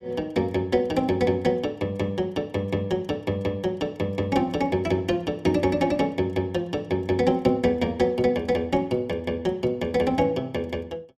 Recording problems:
none

